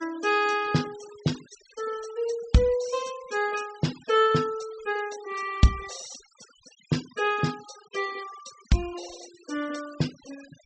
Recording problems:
low-pass filter; nothing above 8 kHz
noise reduction artefacts; signal-to-artefact ratio 18 dB

